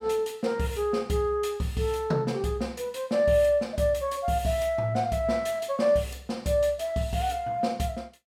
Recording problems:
none

